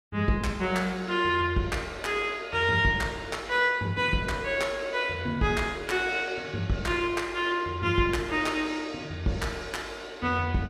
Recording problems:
none

